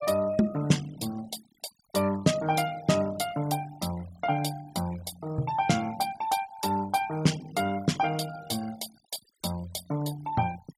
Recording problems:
noise reduction artefacts; signal-to-artefact ratio 17 dB

